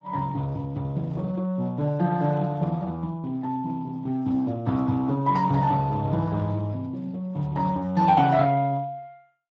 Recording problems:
lossy compression; Speex, log-spectral distance 2 dB

